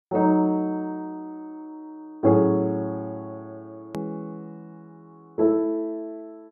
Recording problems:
edit click; at 4 s

